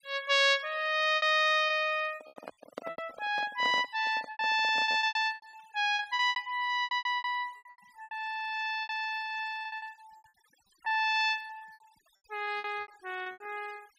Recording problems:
noise reduction artefacts; signal-to-artefact ratio 25 dB
lost packets; 16% of the sound replaced, filled with repeated pitch periods
handling noise; from 2 to 5 s; peak -6 dB vs average level

